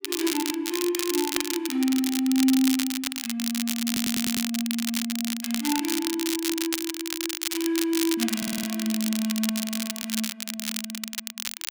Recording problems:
crackle; vinyl, SNR 2 dB
stutter; at 4 s and at 8.5 s

